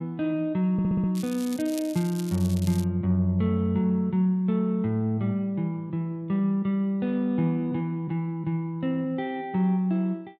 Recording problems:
stutter; at 0.5 s
crackling; from 1 to 3 s; loose cable, SNR 16 dB

